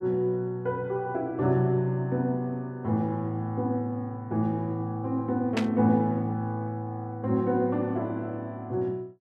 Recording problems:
burst of static; at 5.5 s; peak +1 dB vs average level

